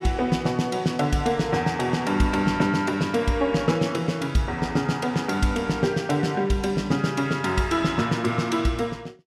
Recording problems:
none

